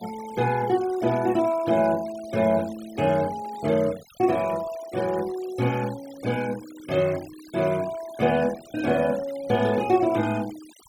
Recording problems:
denoising artefacts; signal-to-artefact ratio 19 dB

